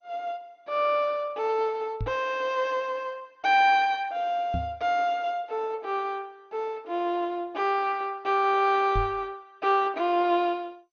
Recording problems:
lossy compression; MP2, log-spectral distance 2 dB, nothing above 6.3 kHz
microphone thump; at 2 s, at 4.5 s and at 9 s; peak -1 dB vs average level

